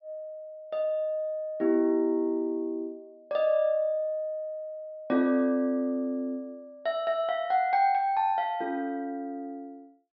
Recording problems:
treble missing; nothing above 5.5 kHz

